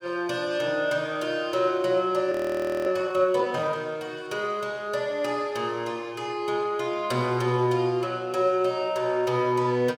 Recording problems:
frozen audio; at 2.5 s for 0.5 s

